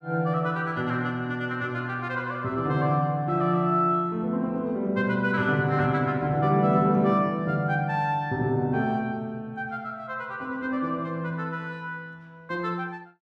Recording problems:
none

